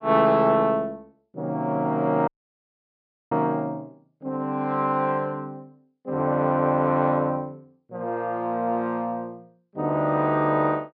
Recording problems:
treble missing; nothing above 5.5 kHz
audio cutting out; at 2.5 s for 1 s

